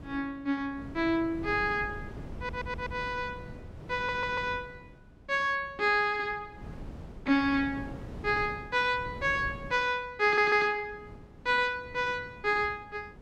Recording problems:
wind on the microphone; below 290 Hz, SNR 16 dB
stutter; at 2.5 s, at 4 s and at 10 s

